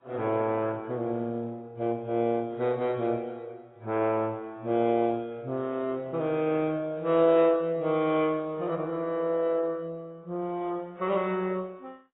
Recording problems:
lossy codec; MP2, then AAC, log-spectral distance 2 dB, nothing above 3.5 kHz

